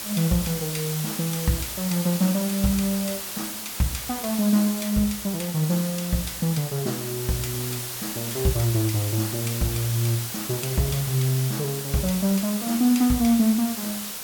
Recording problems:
hiss; slope 0 dB per octave, SNR 5 dB

